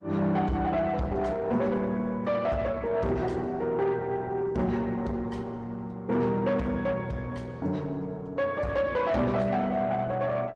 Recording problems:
codec artefacts; MP3, then Opus, log-spectral distance 2 dB
distorted audio; soft clipping, signal-to-distortion ratio 11 dB

